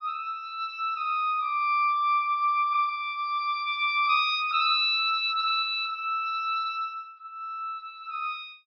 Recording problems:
low-pass filter; nothing above 5.5 kHz

